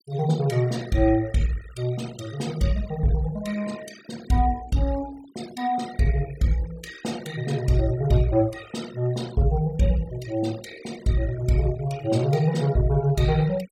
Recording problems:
denoising artefacts; signal-to-artefact ratio 20 dB

